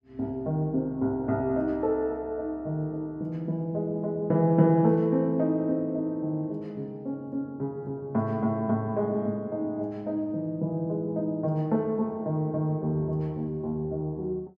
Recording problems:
none

